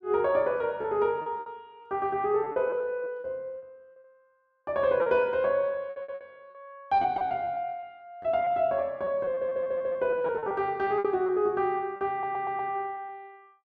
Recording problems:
packet loss; 10% of the sound replaced, filled with repeated pitch periods
stutter; at 6 s, at 9.5 s and at 12 s

